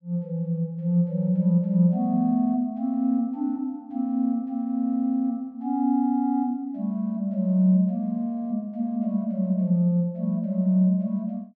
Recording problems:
none

